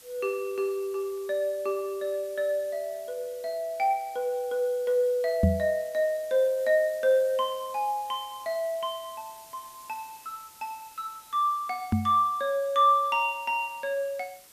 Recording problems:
background hiss; slope 0 dB per octave, SNR 22 dB
knock on the microphone; at 5.5 s and at 12 s; peak +8 dB vs average level

